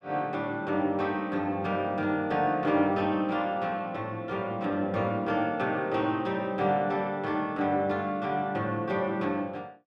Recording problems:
none

